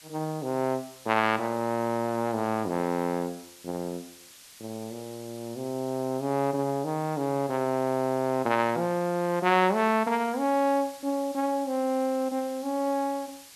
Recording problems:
background hiss; slope +2 dB per octave, SNR 20 dB

